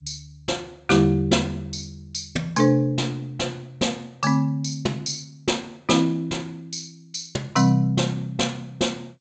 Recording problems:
lossy compression; G.722, log-spectral distance 4 dB, nothing above 7.6 kHz

